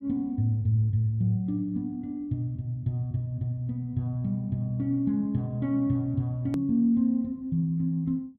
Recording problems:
edit click; at 6.5 s

